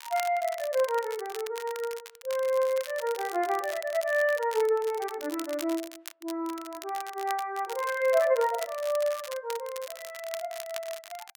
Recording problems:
crackling; vinyl, SNR 14 dB

